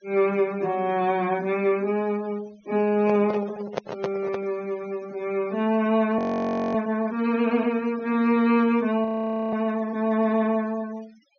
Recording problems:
treble missing; nothing above 6.5 kHz
noise reduction artefacts; signal-to-artefact ratio 23 dB
handling noise; from 3 to 4.5 s; peak +1 dB vs average level
frozen audio; at 6 s for 0.5 s and at 9 s

